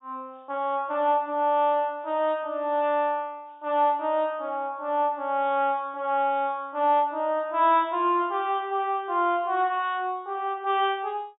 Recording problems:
treble missing; nothing above 4 kHz

